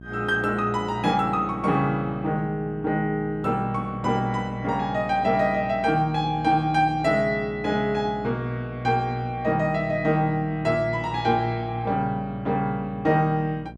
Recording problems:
hum; 60 Hz, harmonics up to 720 Hz, SNR 17 dB

